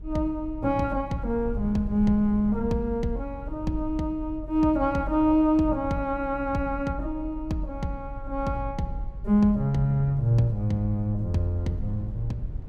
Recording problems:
low-frequency rumble; below 68 Hz, SNR 12 dB

